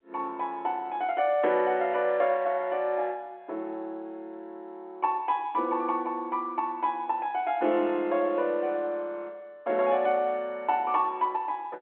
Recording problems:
phone line; 260 Hz to 3.3 kHz, G.711

